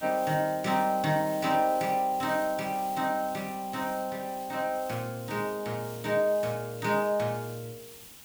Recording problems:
background hiss; SNR 16 dB

